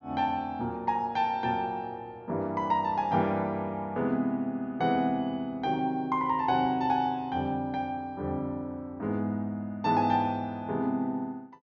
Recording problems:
treble cut off; nothing above 6.7 kHz

